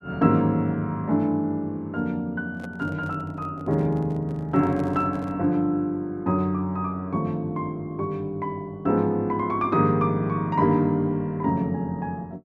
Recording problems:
handling noise; from 2.5 to 5.5 s; peak -10 dB vs average level

